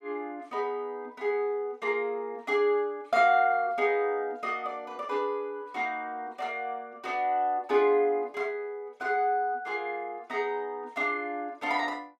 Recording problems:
none

